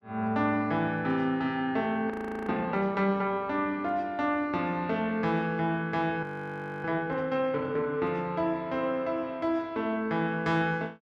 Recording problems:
frozen audio; at 2 s and at 6 s for 0.5 s

